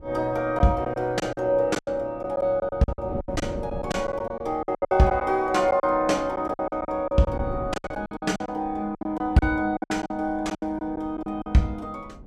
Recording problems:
wind on the microphone; below 270 Hz, SNR 17 dB
packet loss; 15% of the sound replaced, filled with silence

